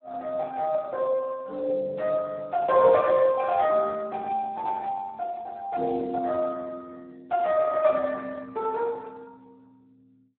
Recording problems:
telephone audio; 280 Hz to 2.8 kHz, Speex

